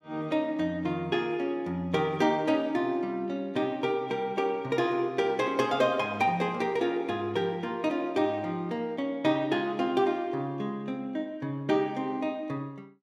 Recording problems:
none

